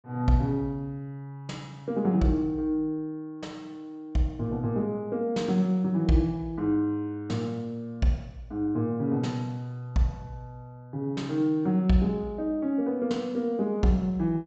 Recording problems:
treble missing; nothing above 8 kHz

